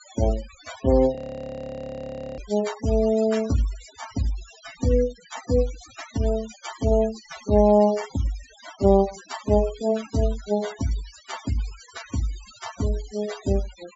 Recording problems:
treble cut off; nothing above 8 kHz
noise reduction artefacts; signal-to-artefact ratio 16 dB
audio freezing; at 1 s for 1 s

